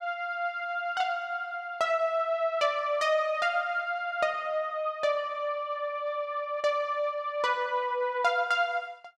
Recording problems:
none

